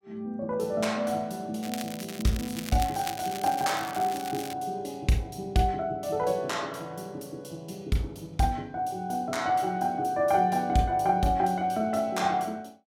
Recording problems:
crackle; from 1.5 to 4.5 s; loose cable, SNR 12 dB

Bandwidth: 16.5 kHz